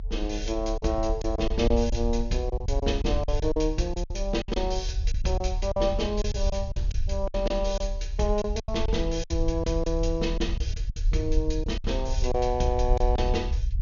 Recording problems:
low-pass filter; nothing above 6.7 kHz
lossy compression; G.722, log-spectral distance 2 dB
low-frequency rumble; below 62 Hz, strongest tone 36 Hz, SNR 2 dB
lost packets; 9% of the sound replaced, filled with silence

